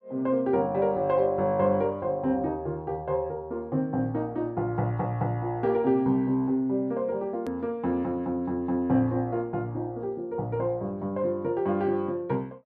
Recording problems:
click at an edit; at 7.5 s

